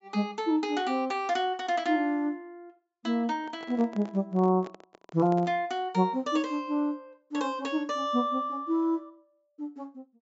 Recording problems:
low-pass filter; nothing above 8 kHz
handling noise; from 3.5 to 5.5 s; peak -9 dB vs average level

